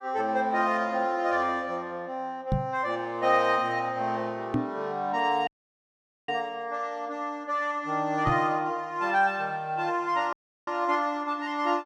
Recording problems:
knock on the microphone; at 2.5 s, at 4.5 s and at 8.5 s; peak +4 dB vs average level
audio cutting out; at 5.5 s for 1 s and at 10 s

